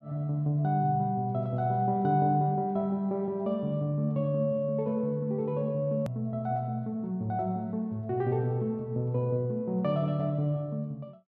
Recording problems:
edit click; at 6 s

